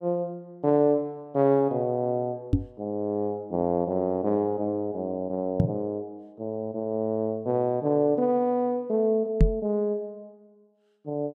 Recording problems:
microphone thump; at 2.5 s, at 5.5 s and at 9.5 s; peak +9 dB vs average level

